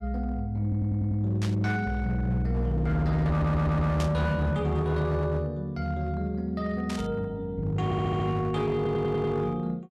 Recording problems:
distortion; hard clipping, signal-to-distortion ratio 12 dB
stutter; 4 times, first at 0.5 s
burst of static; at 1.5 s, at 4 s and at 7 s; peak -5 dB vs average level

